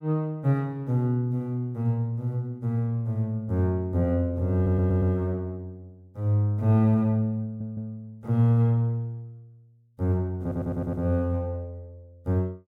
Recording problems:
audio stuttering; at 4.5 s, at 7.5 s and at 10 s

